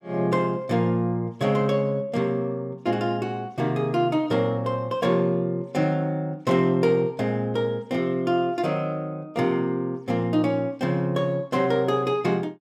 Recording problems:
none

